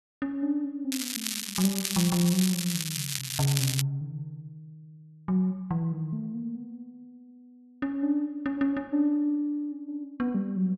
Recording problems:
crackle; from 1 to 4 s; loose cable, SNR 2 dB

